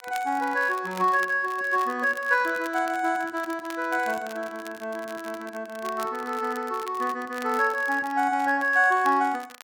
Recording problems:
crackle; vinyl, SNR 20 dB

